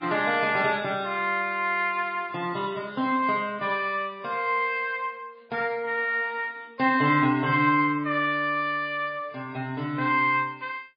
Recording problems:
lossy codec; MP3, log-spectral distance 2 dB, nothing above 4.8 kHz

